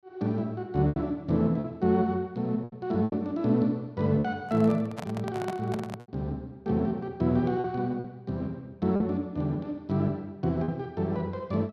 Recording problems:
lost packets; 5% of the sound replaced, filled with repeated pitch periods
handling noise; from 4.5 to 6 s; peak -2 dB vs average level

